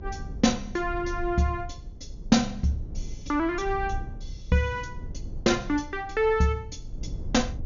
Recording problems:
low-pass filter; nothing above 6.9 kHz
low-frequency rumble; below 80 Hz, SNR 13 dB

